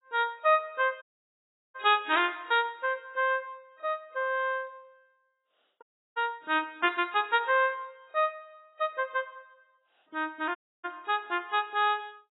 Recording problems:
lossy codec; AAC, log-spectral distance 3 dB, nothing above 3.5 kHz
audio cutting out; at 1 s for 0.5 s, at 6 s and at 11 s

